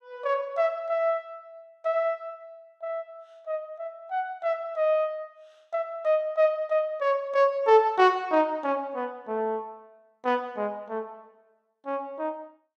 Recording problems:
none

